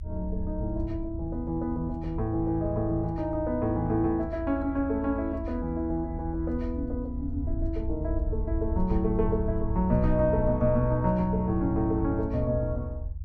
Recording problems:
low-frequency rumble; below 78 Hz, SNR 6 dB

